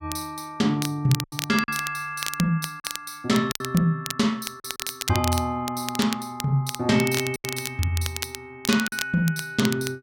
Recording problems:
crackle; vinyl, SNR 8 dB
packet loss; 4% of the sound replaced, filled with silence

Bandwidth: 16.5 kHz